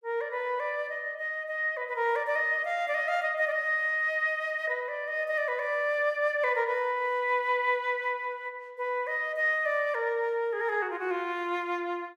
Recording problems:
none

